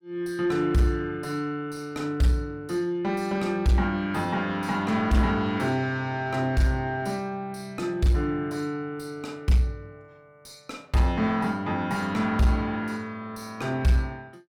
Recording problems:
distorted audio; soft clipping, signal-to-distortion ratio 10 dB

